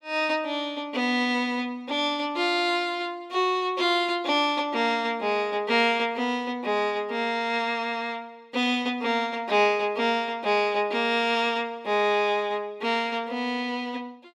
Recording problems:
none

